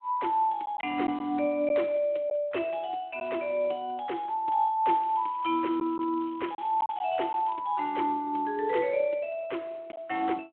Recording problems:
telephone audio; 260 Hz to 3.3 kHz, Speex
lost packets; 2% of the sound replaced, filled with silence
crackling; from 5 to 7.5 s; loose cable, SNR 27 dB

